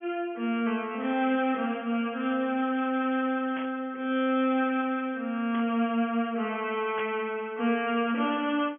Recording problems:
treble cut off; nothing above 3.3 kHz
static burst; at 3.5 s, at 5.5 s and at 7 s; peak -6 dB vs average level

